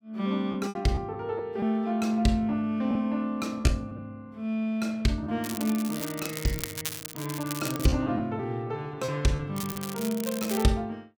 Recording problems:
lost packets; 6% of the sound replaced, filled with repeated pitch periods
crackle; from 5.5 to 8 s and from 9.5 to 11 s; loose cable, SNR 8 dB

